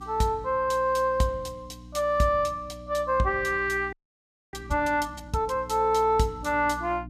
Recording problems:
electrical hum; 60 Hz, harmonics up to 300 Hz, SNR 19 dB
audio freezing; at 4 s for 0.5 s

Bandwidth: 14.5 kHz